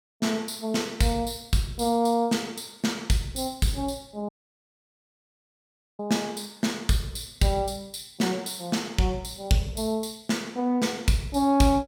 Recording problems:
audio cutting out; at 4.5 s for 1.5 s

